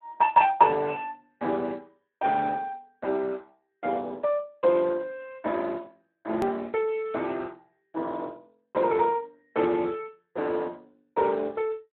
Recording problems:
phone line; 260 Hz to 3.1 kHz, Speex
hard cut with a click; at 6.5 s

